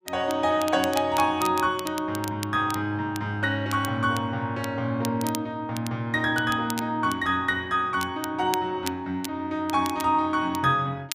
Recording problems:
crackling; vinyl, SNR 14 dB

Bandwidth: 15 kHz